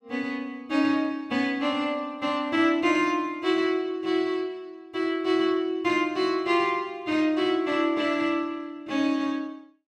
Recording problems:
none

